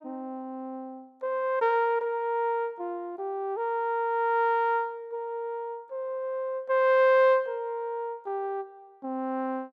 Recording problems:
none

